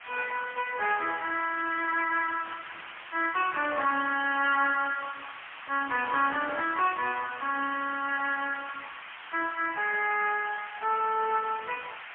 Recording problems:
telephone audio; 370 Hz to 3 kHz, AMR-NB, then MP3
background hiss; SNR 13 dB
burst of static; at 4 s and at 7.5 s; peak -17 dB vs average level

